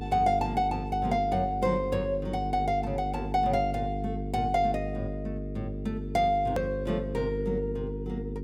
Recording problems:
hum; 50 Hz, harmonics up to 450 Hz, SNR 6 dB
edit click; at 6.5 s

